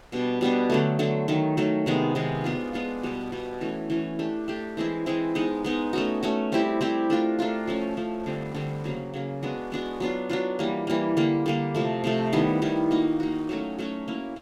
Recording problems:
wind on the microphone; below 1.6 kHz, SNR 25 dB

